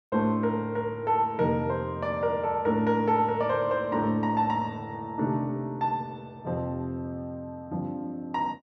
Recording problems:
none

